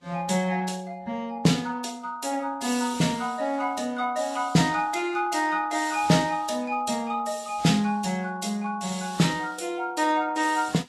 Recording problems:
lossy compression; Vorbis, log-spectral distance 3 dB, nothing above 12.3 kHz

